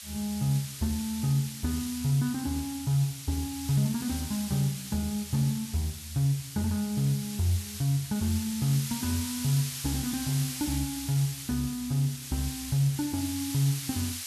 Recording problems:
background hiss; slope +5 dB per octave, SNR 8 dB
crackle; from 0.5 to 2.5 s, from 3.5 to 6 s and at 13 s; loose cable, SNR 25 dB

